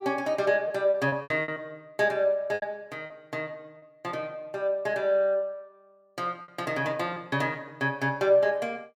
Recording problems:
lost packets; 7% of the sound replaced, filled with repeated pitch periods

